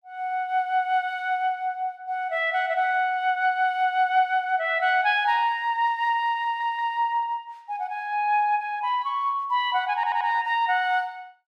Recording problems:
stutter; at 6.5 s and at 10 s

